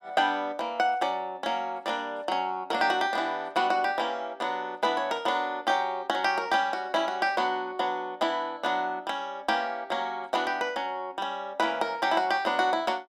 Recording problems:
none

